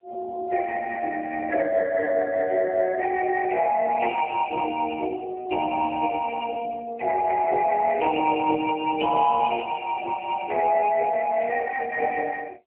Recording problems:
telephone audio; 320 Hz to 2 kHz, AMR-NB

